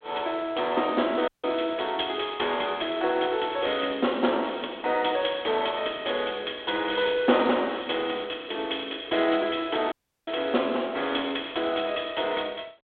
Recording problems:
phone line; 280 Hz to 3.6 kHz, G.726
dropout; at 1.5 s and at 10 s

